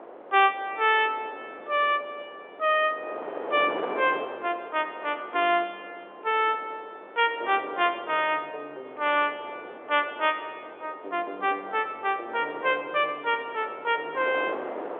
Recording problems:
telephone audio; 320 Hz to 3.6 kHz, G.711
wind on the microphone; below 870 Hz, SNR 13 dB

